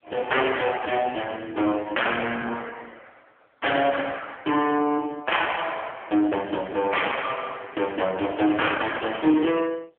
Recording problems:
phone line; 220 Hz to 3.3 kHz, AMR-NB
distorted audio; soft clipping, signal-to-distortion ratio 7 dB

